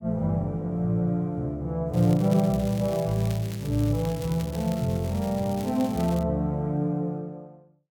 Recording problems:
crackle; from 2 to 6 s; loose cable, SNR 18 dB

